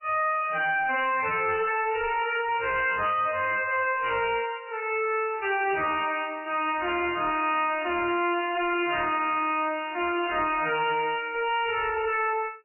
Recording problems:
lossy compression; AAC, then MP3, log-spectral distance 7 dB, nothing above 2.8 kHz
distortion; hard clipping, signal-to-distortion ratio 6 dB

